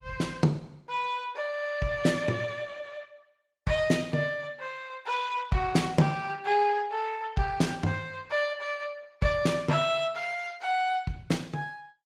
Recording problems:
lossy compression; Opus, log-spectral distance 4 dB, nothing above 18.9 kHz

